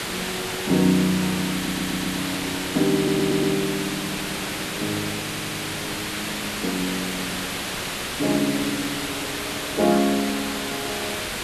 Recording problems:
background hiss; SNR 2 dB
stutter; at 1.5 s, at 3 s and at 5 s

